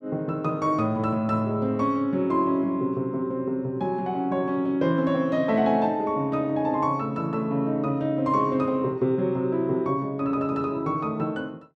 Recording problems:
none

